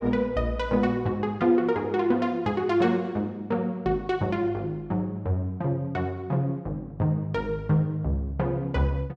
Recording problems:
none

